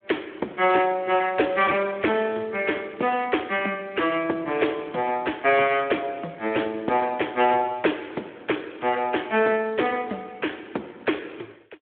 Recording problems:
phone line; 260 Hz to 3.4 kHz, Speex

